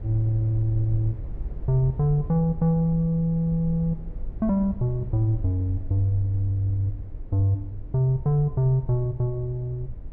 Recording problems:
low-frequency rumble; below 68 Hz, SNR 13 dB

